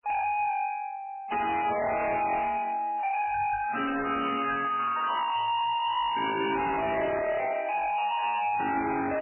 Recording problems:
lossy compression; MP3, log-spectral distance 6 dB, nothing above 2.7 kHz
distortion; hard clipping, signal-to-distortion ratio 6 dB

